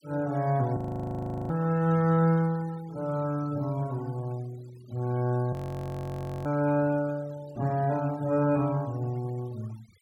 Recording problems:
denoising artefacts; signal-to-artefact ratio 24 dB
audio freezing; at 1 s for 0.5 s and at 5.5 s for 1 s

